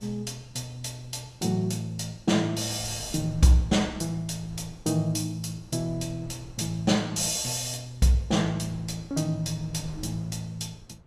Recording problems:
wind on the microphone; below 190 Hz, SNR 21 dB

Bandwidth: 14.5 kHz